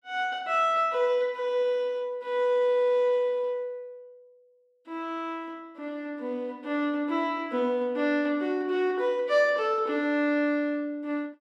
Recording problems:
none

